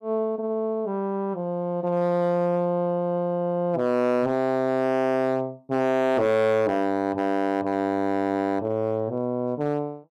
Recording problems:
distorted audio; hard clipping, signal-to-distortion ratio 11 dB

